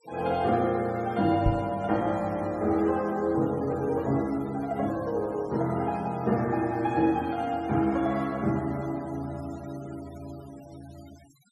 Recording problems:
denoising artefacts; signal-to-artefact ratio 23 dB
knock on the microphone; at 1.5 s; peak +5 dB vs average level

